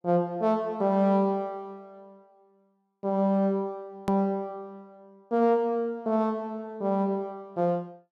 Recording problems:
edit click; at 4 s

